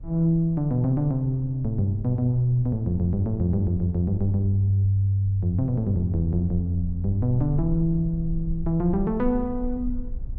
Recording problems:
rumble; below 56 Hz, strongest tone 22 Hz, SNR 14 dB

